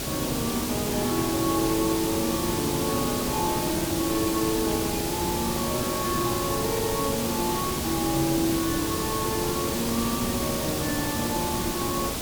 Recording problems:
hiss; SNR 0 dB

